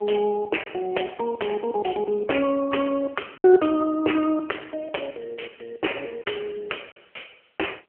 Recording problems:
telephone audio; 300 Hz to 3.1 kHz, AMR-NB
lost packets; 1.9% of the sound replaced, filled with silence

